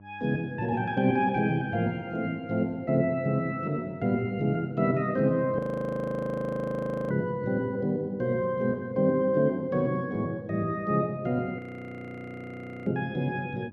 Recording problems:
hum; 50 Hz, harmonics up to 700 Hz, SNR 22 dB
frozen audio; at 5.5 s for 1.5 s and at 12 s for 1.5 s

